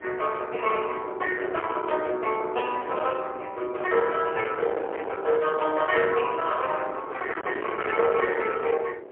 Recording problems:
phone line; 320 Hz to 3.3 kHz, AMR-NB, then MP3
distortion; hard clipping, signal-to-distortion ratio 8 dB
wind on the microphone; below 1.4 kHz, SNR 10 dB

